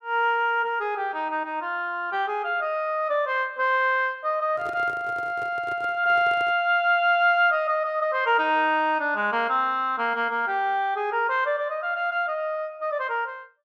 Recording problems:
handling noise; from 4.5 to 6.5 s; peak -12 dB vs average level

